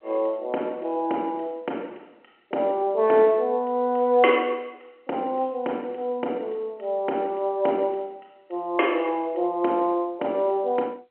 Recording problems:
phone line; 260 Hz to 3.3 kHz, G.711

